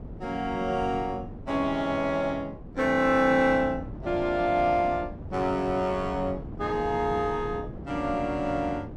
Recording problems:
wind on the microphone; below 290 Hz, SNR 13 dB

